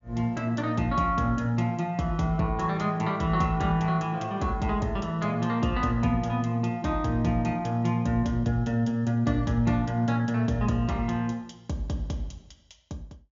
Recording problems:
treble cut off; nothing above 7 kHz

